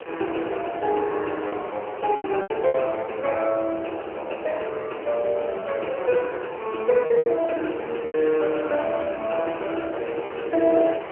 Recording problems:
phone line; 280 Hz to 3.1 kHz, AMR-NB
wind on the microphone; below 1.3 kHz, SNR 13 dB
packet loss; 5% of the sound replaced, filled with repeated pitch periods

